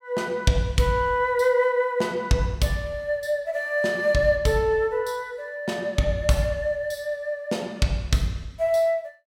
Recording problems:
none

